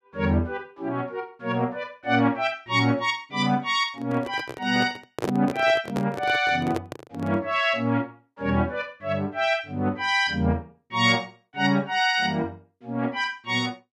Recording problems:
handling noise; from 4 to 7.5 s; peak +1 dB vs average level

